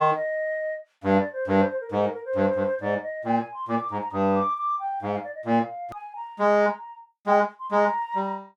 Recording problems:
edit click; at 6 s

